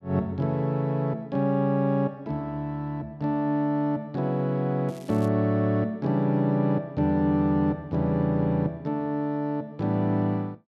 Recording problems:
crackle; at 5 s; loose cable, SNR 27 dB

